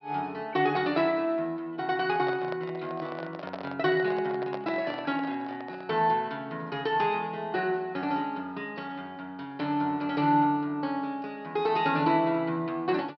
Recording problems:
treble cut off; nothing above 5.5 kHz
microphone handling noise; from 2 to 6 s; peak -4 dB vs average level

